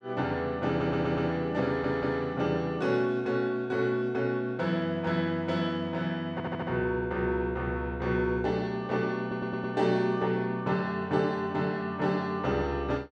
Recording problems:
stutter; 4 times, first at 0.5 s

